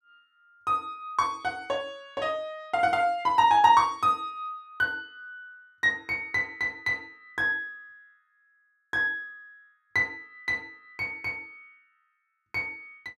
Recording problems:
none

